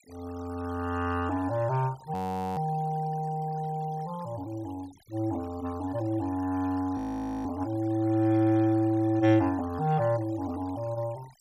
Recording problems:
noise reduction artefacts; signal-to-artefact ratio 23 dB
audio freezing; at 2 s and at 7 s

